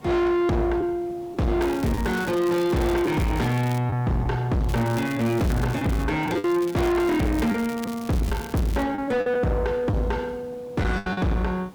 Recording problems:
distorted audio; soft clipping, signal-to-distortion ratio 5 dB
background hiss; SNR 22 dB
packet loss; 4% of the sound replaced, filled with the last packet
crackling; from 1.5 to 4 s, from 4.5 to 6 s and from 6 to 9 s; loose cable, SNR 18 dB

